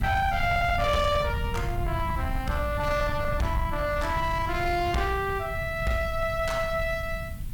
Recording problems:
distorted audio; soft clipping, signal-to-distortion ratio 12 dB
hiss; slope -1 dB per octave, SNR 23 dB
rumble; below 120 Hz, SNR 6 dB

